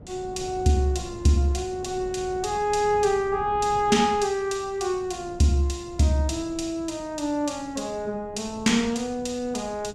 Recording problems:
wind on the microphone; below 290 Hz, SNR 18 dB

